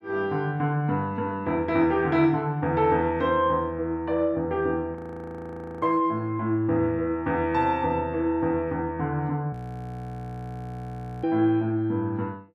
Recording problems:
frozen audio; at 5 s for 1 s and at 9.5 s for 1.5 s

